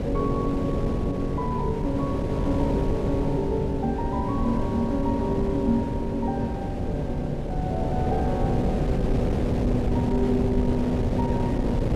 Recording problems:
wind noise; below 340 Hz, SNR 0 dB

